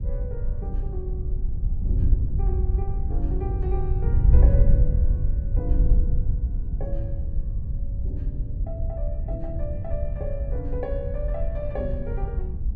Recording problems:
wind noise; below 74 Hz, SNR -10 dB

